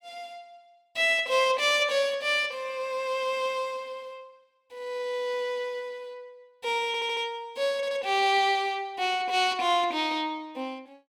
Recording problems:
audio stuttering; at 7 s and at 8 s

